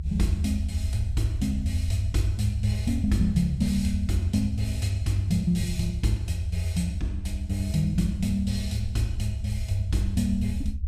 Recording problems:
low-frequency rumble; below 78 Hz, strongest tone 64 Hz, SNR 5 dB

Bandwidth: 14.5 kHz